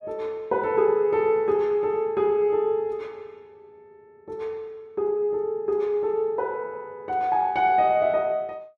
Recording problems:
none

